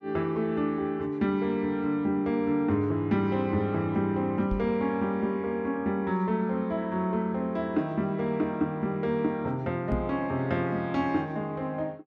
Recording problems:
microphone bump; at 4.5 s and at 10 s; peak +1 dB vs average level

